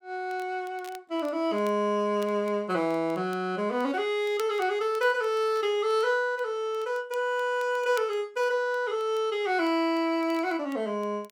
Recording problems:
crackle; vinyl, SNR 26 dB

